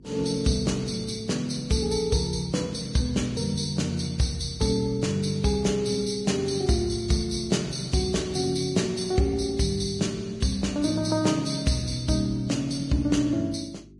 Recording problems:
lossy compression; Vorbis, log-spectral distance 4 dB, nothing above 10.1 kHz
hum; 50 Hz, harmonics up to 400 Hz, SNR 25 dB

